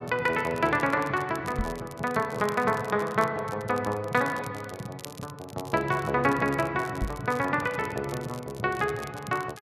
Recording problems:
crackling; vinyl, SNR 20 dB
microphone thump; at 1.5 s and at 7 s; peak +1 dB vs average level

